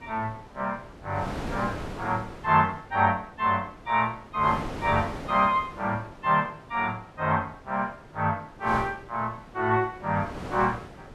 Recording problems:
wind on the microphone; below 880 Hz, SNR 13 dB

